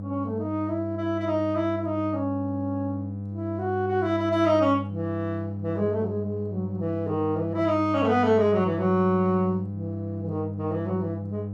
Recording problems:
hum; 50 Hz, harmonics up to 500 Hz, SNR 7 dB

